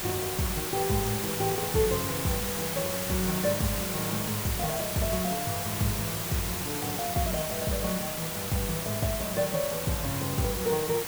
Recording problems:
background hiss; slope -2 dB per octave, SNR 1 dB

